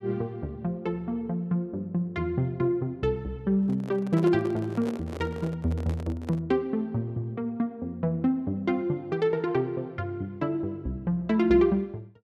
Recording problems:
handling noise; from 3.5 to 6.5 s; peak -6 dB vs average level

